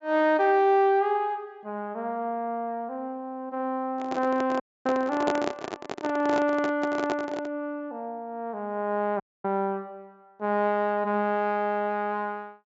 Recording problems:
low-pass filter; nothing above 8 kHz
handling noise; from 4 to 7.5 s; peak +3 dB vs average level
audio cutting out; at 4.5 s and at 9 s

